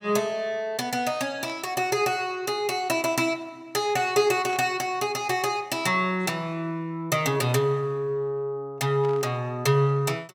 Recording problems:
burst of static; at 1.5 s, at 4.5 s and at 9 s; peak -12 dB vs average level

